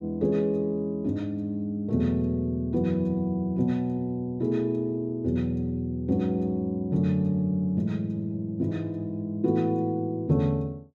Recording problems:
none

